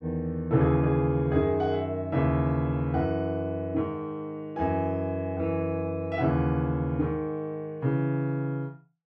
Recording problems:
none

